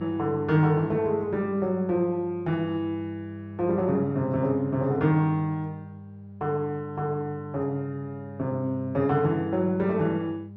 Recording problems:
electrical hum; 50 Hz, harmonics up to 600 Hz, SNR 14 dB

